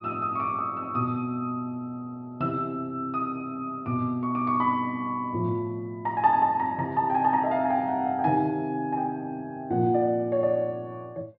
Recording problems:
low-pass filter; nothing above 5.5 kHz

